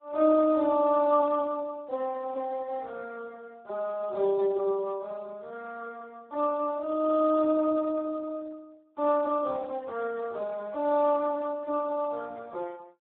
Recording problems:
phone line; 280 Hz to 2 kHz, Speex

